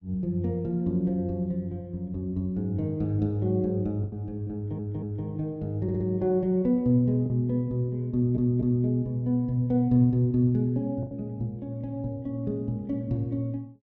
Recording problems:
packet loss; 1.6% of the sound replaced, filled with the last packet
stutter; at 4.5 s, at 6 s and at 8 s

